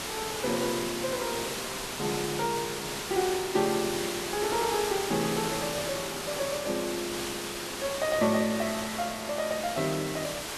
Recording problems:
background hiss; slope -2 dB per octave, SNR 3 dB

